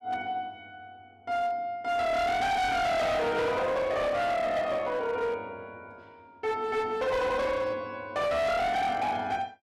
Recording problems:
distortion; hard clipping, signal-to-distortion ratio 8 dB

